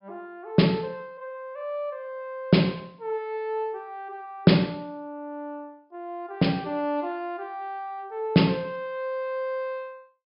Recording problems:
treble missing; nothing above 5.5 kHz

